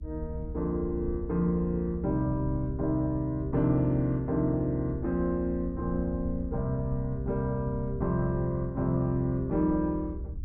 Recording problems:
rumble; below 76 Hz, SNR 10 dB

